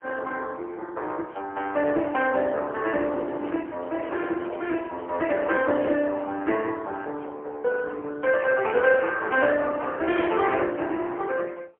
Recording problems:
telephone audio; 260 Hz to 3.1 kHz, AMR-NB, then MP3
microphone handling noise; from 3 to 6 s; peak -8 dB vs average level

